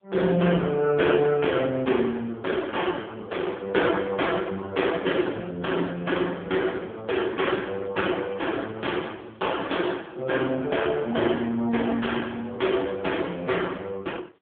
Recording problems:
phone line; 190 Hz to 3.4 kHz, AMR-NB

